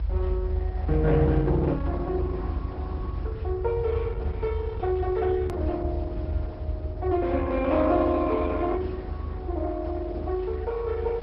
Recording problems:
treble cut off; nothing above 5.4 kHz
codec artefacts; Opus, log-spectral distance 2 dB
hiss; SNR 25 dB
low-frequency rumble; below 78 Hz, strongest tone 50 Hz, SNR 4 dB
hard cut with a click; at 5.5 s

